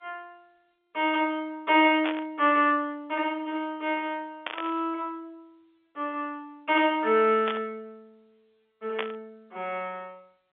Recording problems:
phone line; 340 Hz to 3.7 kHz, G.711
burst of static; 4 times, first at 2 s; peak 0 dB vs average level

